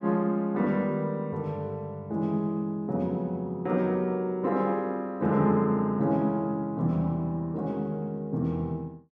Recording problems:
none

